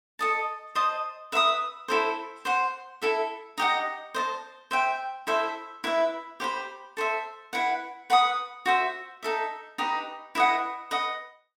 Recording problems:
none

